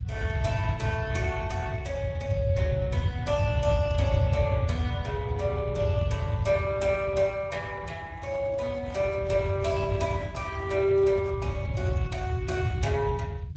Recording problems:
lossy codec; Vorbis, then Speex, log-spectral distance 3 dB, nothing above 7.8 kHz
low-frequency rumble; below 120 Hz, SNR 1 dB
handling noise; from 8 to 12 s; peak -11 dB vs average level

